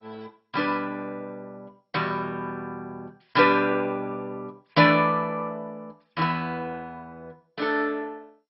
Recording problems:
codec artefacts; MP2, log-spectral distance 3 dB, nothing above 5.3 kHz

